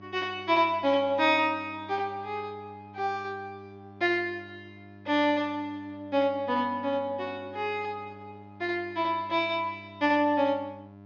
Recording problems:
treble missing; nothing above 6.6 kHz
hum; 50 Hz, harmonics up to 1.3 kHz, SNR 21 dB

